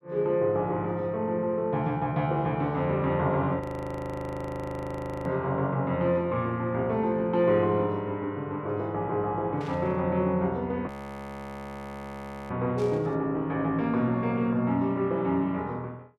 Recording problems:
frozen audio; at 3.5 s for 1.5 s and at 11 s for 1.5 s
static burst; at 9.5 s and at 13 s; peak -14 dB vs average level

